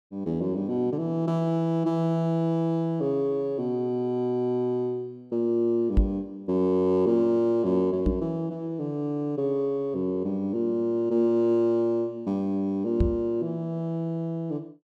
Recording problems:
microphone thump; at 6 s, at 8 s and at 13 s; peak +7 dB vs average level

